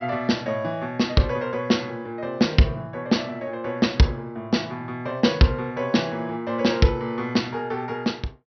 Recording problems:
treble missing; nothing above 6 kHz

